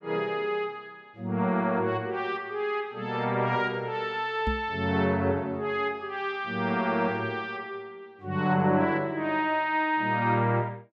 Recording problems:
microphone thump; at 4.5 s; peak 0 dB vs average level

